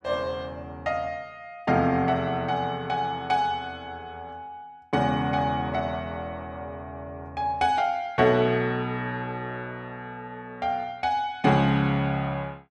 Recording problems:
none

